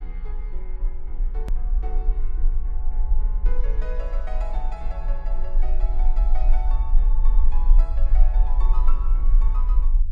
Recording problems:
rumble; below 36 Hz, strongest tone 18 Hz, SNR -16 dB
click at an edit; at 1.5 s

